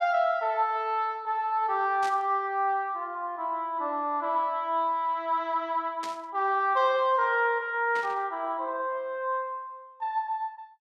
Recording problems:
burst of static; at 2 s, at 6 s and at 8 s; peak -8 dB vs average level

